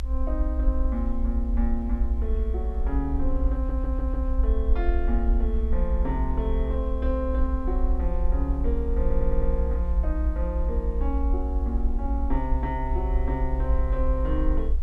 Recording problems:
hiss; slope -6 dB per octave, SNR 26 dB
low-frequency rumble; below 60 Hz, SNR -5 dB
audio stuttering; at 3.5 s and at 9 s

